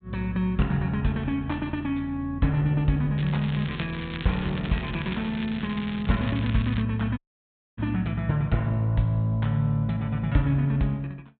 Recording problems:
treble cut off; nothing above 4 kHz
crackling; from 3 to 7 s; loose cable, SNR 13 dB
dropout; at 7 s for 0.5 s

